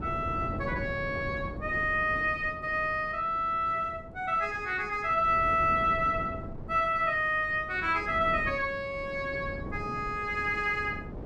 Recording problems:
wind on the microphone; below 340 Hz, SNR 13 dB

